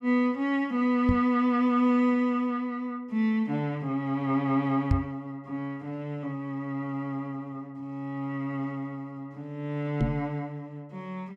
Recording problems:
microphone thump; at 1 s, at 5 s and at 10 s; peak +7 dB vs average level

